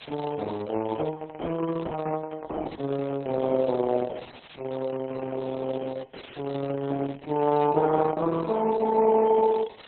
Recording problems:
lossy codec; MP3, then Opus, log-spectral distance 15 dB, nothing above 4 kHz
hiss; SNR 20 dB

